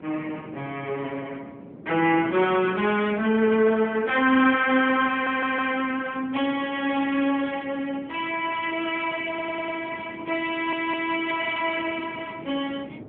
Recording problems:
telephone audio; 170 Hz to 3.3 kHz, AMR-NB
wind on the microphone; below 400 Hz, SNR 17 dB
stutter; at 5 s, at 9.5 s and at 11 s

